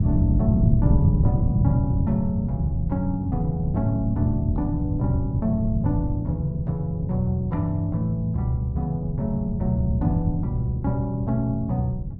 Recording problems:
wind on the microphone; below 160 Hz, SNR 1 dB

